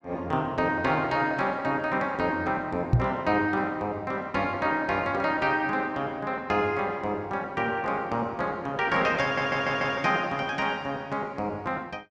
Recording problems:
microphone bump; at 3 s; peak +9 dB vs average level
audio stuttering; at 9 s

